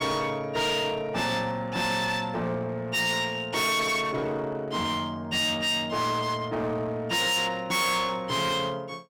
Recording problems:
distorted audio; hard clipping, uneven, signal-to-distortion ratio 6 dB

